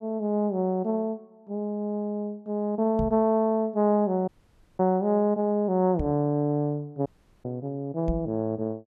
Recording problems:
microphone thump; at 3 s, at 6 s and at 8 s; peak 0 dB vs average level
audio cutting out; at 4.5 s for 0.5 s and at 7 s

